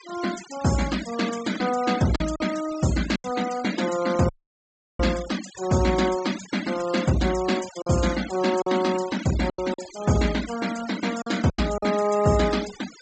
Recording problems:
low-pass filter; nothing above 8 kHz
noise reduction artefacts; signal-to-artefact ratio 13 dB
lost packets; 4% of the sound replaced, filled with silence
dropout; at 4.5 s for 0.5 s

